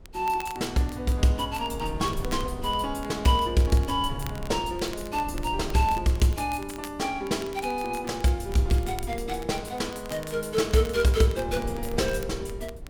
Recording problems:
wind noise; below 110 Hz, SNR 13 dB
crackling; vinyl, SNR 20 dB

